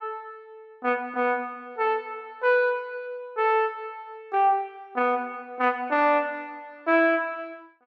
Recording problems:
none

